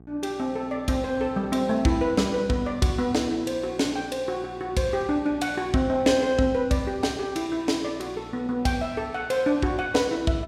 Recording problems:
hum; 60 Hz, harmonics up to 840 Hz, SNR 22 dB

